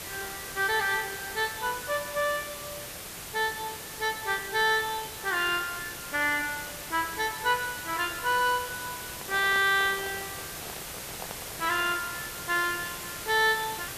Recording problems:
background hiss; slope -2 dB per octave, SNR 9 dB
handling noise; from 9 to 12 s; peak -7 dB vs average level

